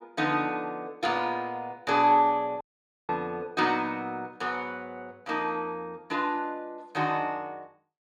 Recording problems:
audio cutting out; at 2.5 s

